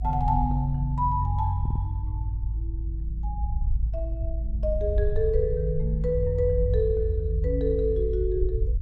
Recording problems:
rumble; below 58 Hz, strongest tone 52 Hz, SNR 3 dB
stutter; at 1.5 s

